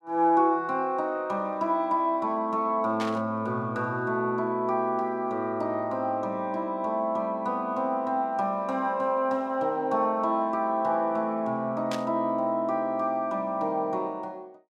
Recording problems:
static burst; at 3 s and at 12 s; peak -5 dB vs average level

